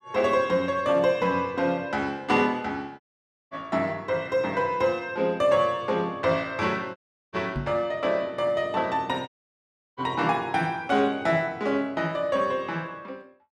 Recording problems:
dropout; at 3 s for 0.5 s, at 7 s and at 9.5 s for 0.5 s
microphone bump; at 7.5 s; peak -1 dB vs average level

